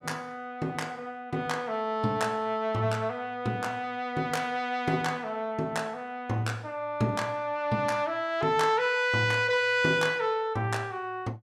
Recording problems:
none

